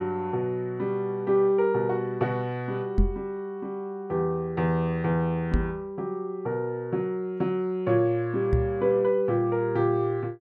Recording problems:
microphone thump; at 3 s, at 5.5 s and at 8.5 s; peak +7 dB vs average level

